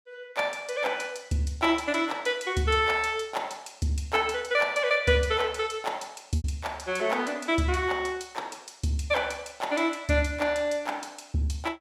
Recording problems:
packet loss; 0.7% of the sound replaced, filled with repeated pitch periods

